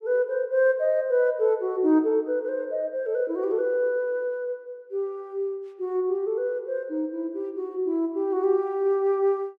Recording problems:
none

